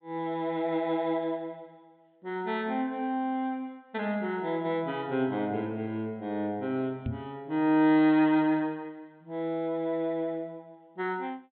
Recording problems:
treble cut off; nothing above 4 kHz
microphone thump; at 7 s; peak -1 dB vs average level

